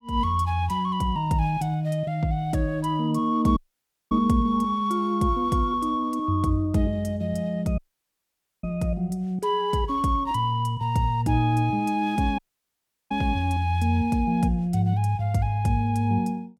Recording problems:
audio cutting out; at 3.5 s for 0.5 s, at 8 s for 1 s and at 12 s for 0.5 s

